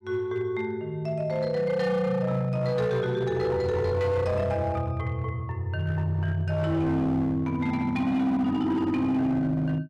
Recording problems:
distortion; hard clipping, signal-to-distortion ratio 12 dB

